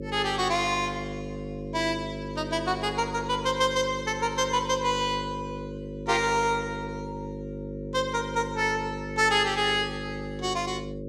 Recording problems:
electrical hum; 50 Hz, harmonics up to 550 Hz, SNR 9 dB

